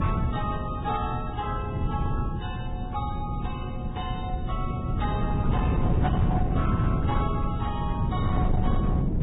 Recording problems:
lossy compression; AAC, then Vorbis, log-spectral distance 2 dB, nothing above 3.4 kHz
distorted audio; hard clipping, signal-to-distortion ratio 12 dB
hum; 60 Hz, harmonics up to 720 Hz, SNR 7 dB
wind noise; below 180 Hz, SNR -5 dB

